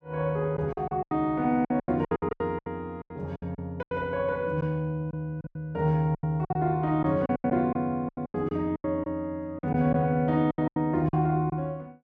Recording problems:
packet loss; 15% of the sound replaced, filled with silence

